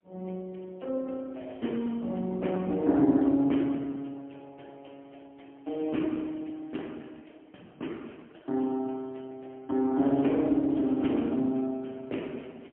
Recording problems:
telephone audio; 190 Hz to 3.4 kHz, AMR-NB, then MP3
crackling; at 11 s; loose cable, SNR 28 dB

